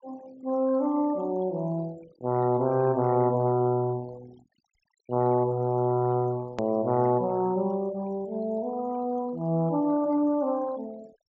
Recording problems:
treble missing; nothing above 7.4 kHz
noise reduction artefacts; signal-to-artefact ratio 24 dB
click at an edit; at 6.5 s

